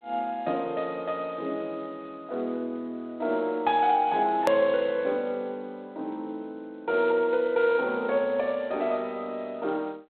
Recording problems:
phone line; 220 Hz to 3.4 kHz, G.726
edit click; at 4.5 s

